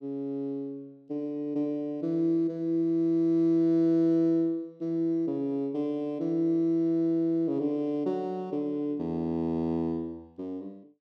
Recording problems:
none

